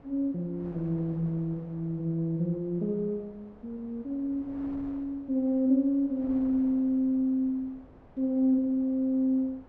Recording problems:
wind on the microphone; below 620 Hz, SNR 23 dB

